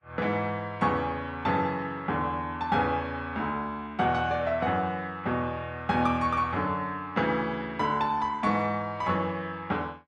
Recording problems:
lossy compression; Vorbis, log-spectral distance 2 dB, nothing above 13.1 kHz

